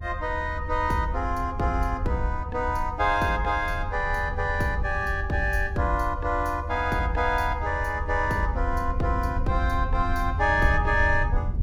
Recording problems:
rumble; below 80 Hz, SNR 6 dB

